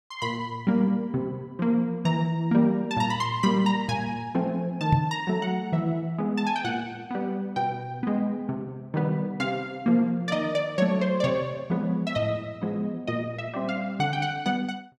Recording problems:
microphone thump; at 5 s; peak +7 dB vs average level

